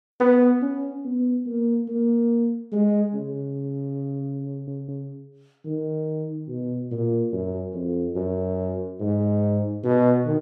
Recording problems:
stutter; at 4.5 s

